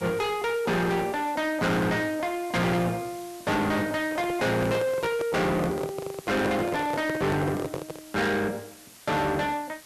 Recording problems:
distorted audio; soft clipping, signal-to-distortion ratio 6 dB
hiss; slope 0 dB per octave, SNR 19 dB
handling noise; from 4 to 8 s; peak +2 dB vs average level

